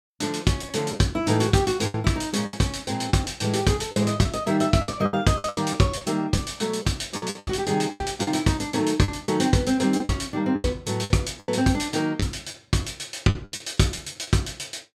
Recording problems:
packet loss; 11% of the sound replaced, filled with the last packet

